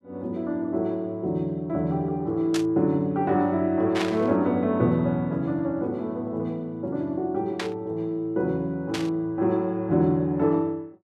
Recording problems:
burst of static; 4 times, first at 2.5 s; peak 0 dB vs average level

